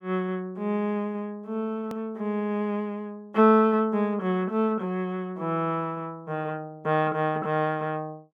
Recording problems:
edit click; at 2 s

